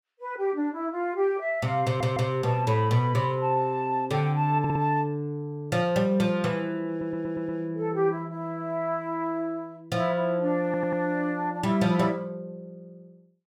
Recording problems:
audio stuttering; 4 times, first at 2 s

